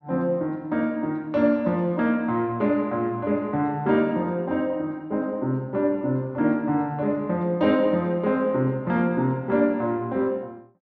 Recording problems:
none

